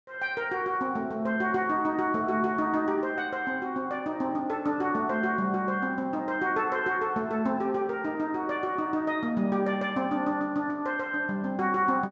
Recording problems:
low-pass filter; nothing above 8 kHz

